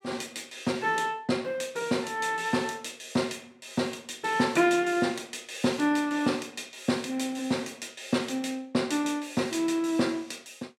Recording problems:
none

